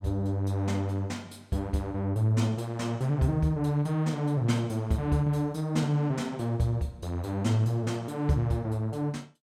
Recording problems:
none

